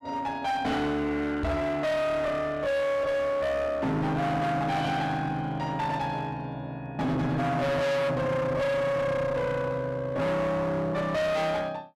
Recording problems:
distorted audio; hard clipping, uneven, signal-to-distortion ratio 5 dB
microphone thump; at 1.5 s; peak +1 dB vs average level

